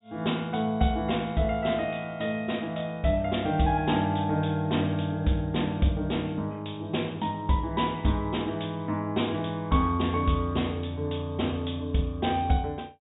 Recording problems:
treble cut off; nothing above 4 kHz

